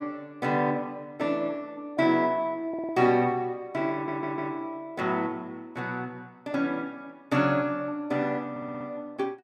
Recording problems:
audio stuttering; at 2.5 s, at 4 s and at 8.5 s

